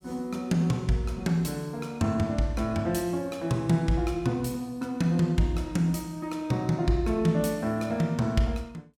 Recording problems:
none

